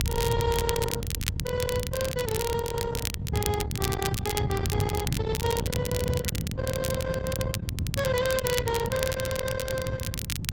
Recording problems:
codec artefacts; Opus, log-spectral distance 2 dB, nothing above 11.6 kHz
distorted audio; soft clipping, signal-to-distortion ratio 11 dB
rumble; below 470 Hz, SNR 2 dB
crackling; vinyl, SNR 6 dB

